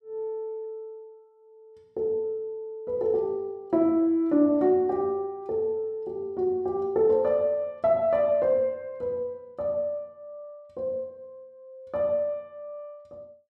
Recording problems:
none

